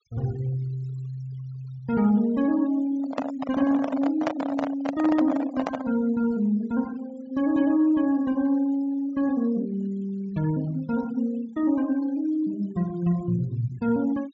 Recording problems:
treble missing; nothing above 8 kHz
noise reduction artefacts; signal-to-artefact ratio 21 dB
handling noise; from 3 to 6 s; peak +3 dB vs average level

